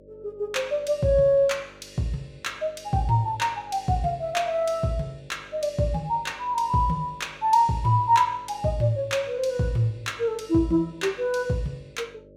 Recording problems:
hum; 50 Hz, harmonics up to 600 Hz, SNR 25 dB

